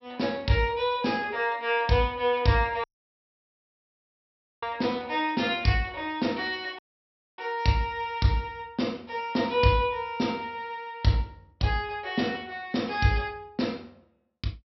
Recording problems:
low-pass filter; nothing above 5.7 kHz
audio cutting out; at 3 s for 2 s and at 7 s for 0.5 s

